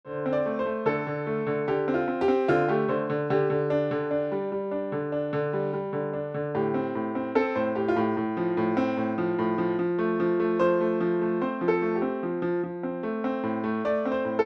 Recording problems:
none

